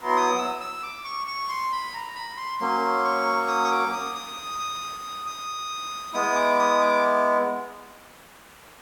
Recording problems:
hiss; SNR 21 dB

